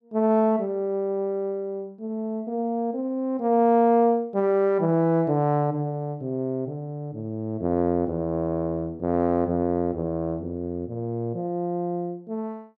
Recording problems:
none

